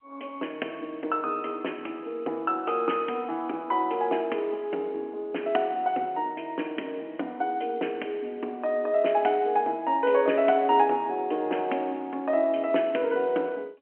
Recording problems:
telephone audio; 240 Hz to 3.2 kHz, G.711

